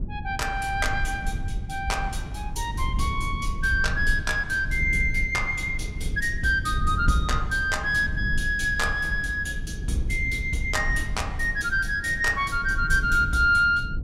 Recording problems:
rumble; below 88 Hz, SNR 8 dB

